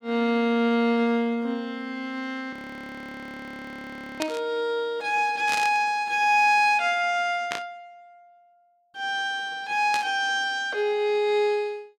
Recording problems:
audio freezing; at 2.5 s for 1.5 s
static burst; 4 times, first at 4 s; peak -2 dB vs average level

